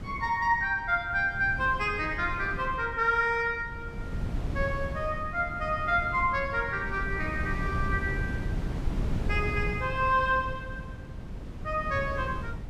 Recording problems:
wind on the microphone; below 170 Hz, SNR 8 dB

